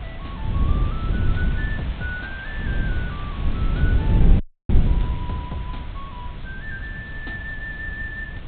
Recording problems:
treble cut off; nothing above 4 kHz
background hiss; SNR 8 dB
wind on the microphone; below 100 Hz, SNR -10 dB
frozen audio; at 4.5 s

